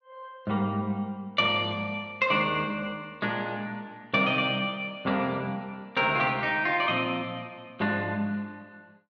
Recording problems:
none

